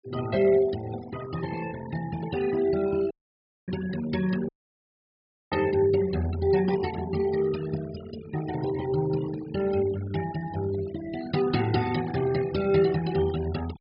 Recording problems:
low-pass filter; nothing above 5.5 kHz
noise reduction artefacts; signal-to-artefact ratio 14 dB
dropout; at 3 s for 0.5 s and at 4.5 s for 1 s
burst of static; at 12 s; peak -23 dB vs average level

